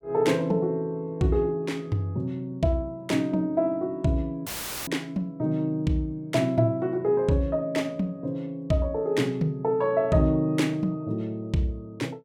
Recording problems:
audio cutting out; at 4.5 s; filled with static

